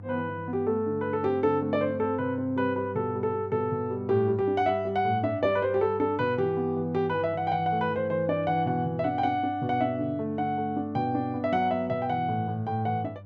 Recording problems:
hum; 50 Hz, harmonics up to 700 Hz, SNR 16 dB

